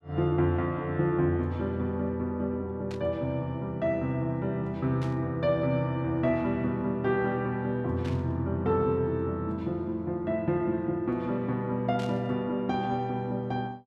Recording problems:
static burst; 4 times, first at 3 s; peak -12 dB vs average level

